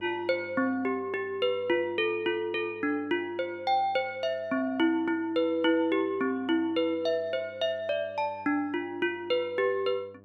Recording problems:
hum; 50 Hz, harmonics up to 1.2 kHz, SNR 25 dB

